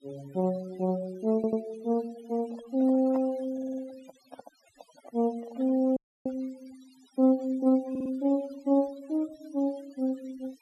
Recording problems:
noise reduction artefacts; signal-to-artefact ratio 23 dB
audio stuttering; at 1.5 s, at 3.5 s and at 8 s
handling noise; from 2 to 6 s; peak -8 dB vs average level
audio cutting out; at 6 s

